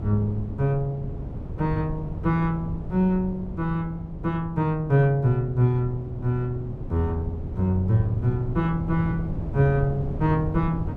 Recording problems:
wind on the microphone; below 170 Hz, SNR 9 dB

